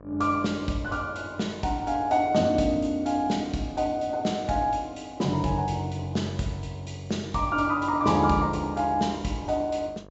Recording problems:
low-pass filter; nothing above 7.6 kHz
electrical hum; 50 Hz, harmonics up to 1.3 kHz, SNR 25 dB

